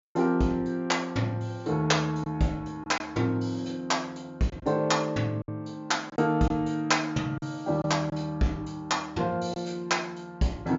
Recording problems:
treble missing; nothing above 7.3 kHz
lost packets; 3% of the sound replaced, filled with silence

